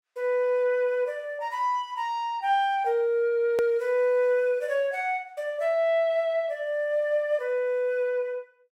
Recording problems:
hard cut with a click; at 3.5 s

